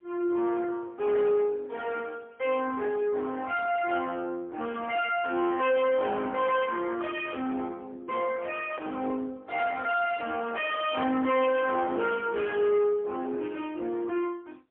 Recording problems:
phone line; 240 Hz to 3.1 kHz, AMR-NB, then MP3
distorted audio; soft clipping, signal-to-distortion ratio 7 dB

